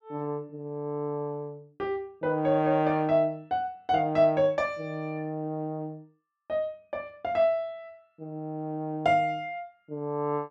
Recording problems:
none

